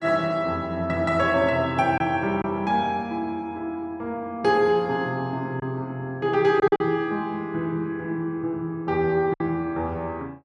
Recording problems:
lost packets; 2% of the sound replaced, filled with silence

